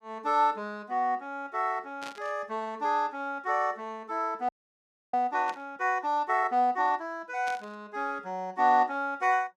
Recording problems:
static burst; at 2 s, at 5.5 s and at 7.5 s; peak -9 dB vs average level
audio freezing; at 4.5 s for 0.5 s

